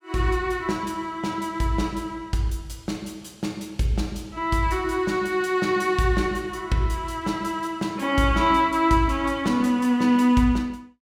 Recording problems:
none

